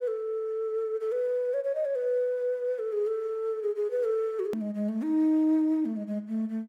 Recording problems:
hard cut with a click; at 4.5 s

